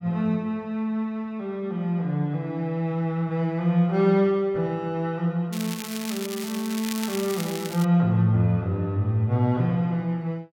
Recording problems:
crackling; from 5.5 to 8 s; loose cable, SNR 10 dB

